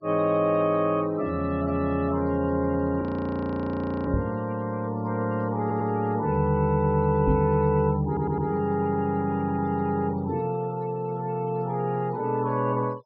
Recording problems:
treble missing; nothing above 5.5 kHz
noise reduction artefacts; signal-to-artefact ratio 25 dB
audio freezing; at 3 s for 1 s
microphone bump; at 4 s and at 7.5 s; peak +2 dB vs average level
stutter; at 5.5 s and at 8 s

